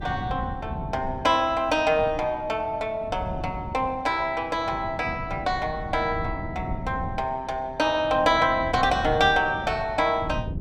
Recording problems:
wind on the microphone; below 200 Hz, SNR 12 dB

